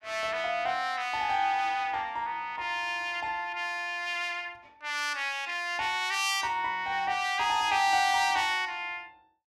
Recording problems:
none

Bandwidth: 14.5 kHz